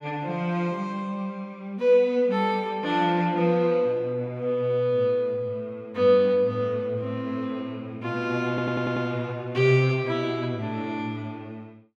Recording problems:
stutter; at 8.5 s

